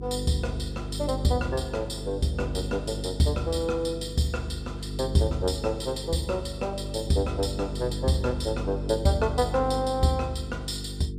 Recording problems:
hum; 50 Hz, harmonics up to 450 Hz, SNR 7 dB

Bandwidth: 14.5 kHz